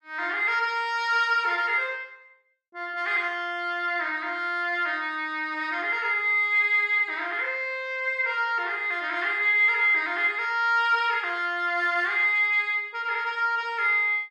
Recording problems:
none

